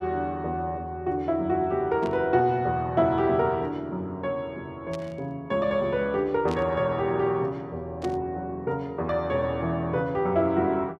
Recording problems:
burst of static; 4 times, first at 2 s; peak -10 dB vs average level

